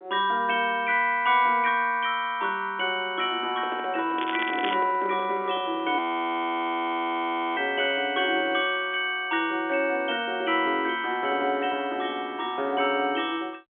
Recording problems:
phone line; 260 Hz to 3.9 kHz, G.711
microphone handling noise; from 3.5 to 6 s; peak -8 dB vs average level
crackle; at 4.5 s; loose cable, SNR 9 dB
frozen audio; at 6 s for 1.5 s

